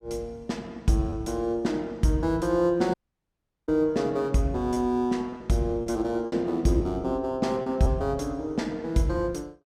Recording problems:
packet loss; 3% of the sound replaced, filled with repeated pitch periods
dropout; at 3 s for 0.5 s

